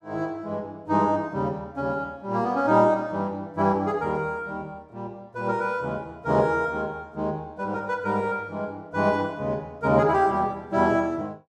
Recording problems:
none

